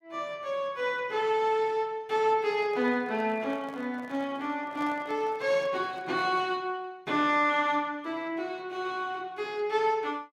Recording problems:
microphone handling noise; from 2.5 to 6.5 s; peak -9 dB vs average level

